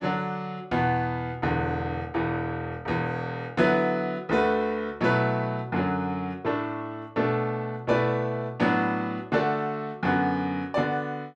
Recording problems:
none

